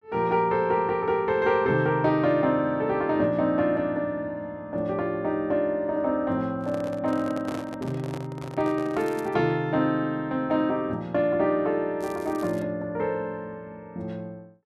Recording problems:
microphone handling noise; from 6.5 to 9 s; peak -6 dB vs average level
crackling; at 9 s and at 12 s; loose cable, SNR 25 dB

